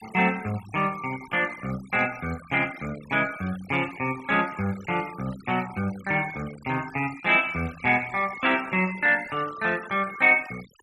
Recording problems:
denoising artefacts; signal-to-artefact ratio 19 dB

